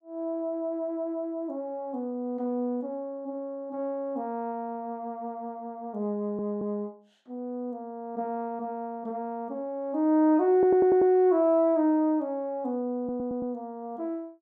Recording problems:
audio stuttering; at 6 s, at 11 s and at 13 s

